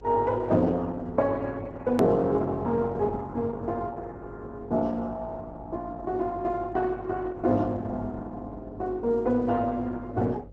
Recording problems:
codec artefacts; Opus, log-spectral distance 2 dB, nothing above 13.1 kHz
hum; 50 Hz, harmonics up to 550 Hz, SNR 20 dB
edit click; at 2 s

